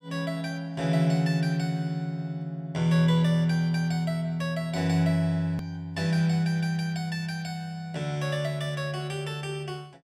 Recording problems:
click at an edit; at 5.5 s

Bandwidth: 15.5 kHz